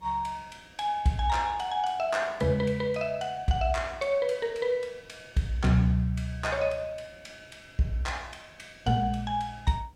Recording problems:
hiss; SNR 30 dB

